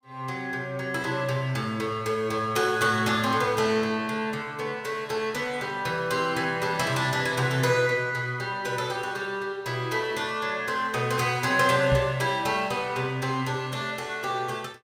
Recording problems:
knock on the microphone; at 12 s; peak +1 dB vs average level

